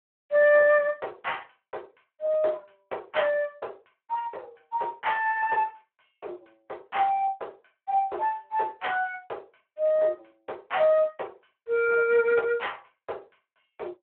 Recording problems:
phone line; 320 Hz to 3.2 kHz, Speex

